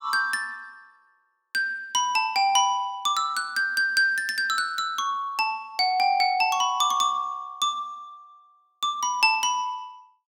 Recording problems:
none

